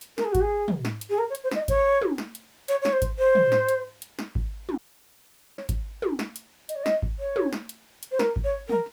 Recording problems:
hiss; slope -1 dB per octave, SNR 29 dB
dropout; at 5 s for 1 s

